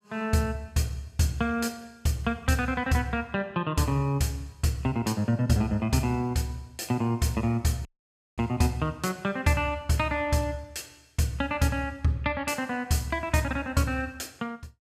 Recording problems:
audio cutting out; at 8 s for 0.5 s

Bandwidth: 15 kHz